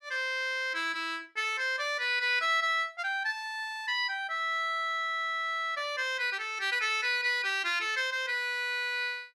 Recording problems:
none

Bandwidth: 14.5 kHz